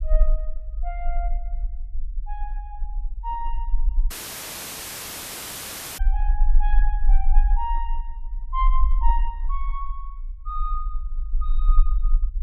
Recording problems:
rumble; below 38 Hz, strongest tone 20 Hz, SNR -7 dB
audio cutting out; at 4 s for 2 s

